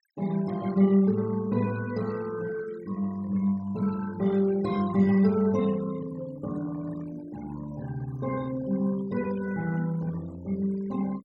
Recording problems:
denoising artefacts; signal-to-artefact ratio 20 dB

